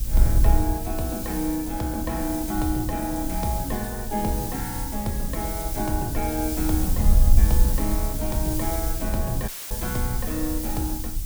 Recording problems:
hum; 50 Hz, harmonics up to 1.4 kHz, SNR 24 dB
hiss; SNR 4 dB
wind on the microphone; below 64 Hz, SNR 0 dB
audio cutting out; at 9.5 s; filled with static

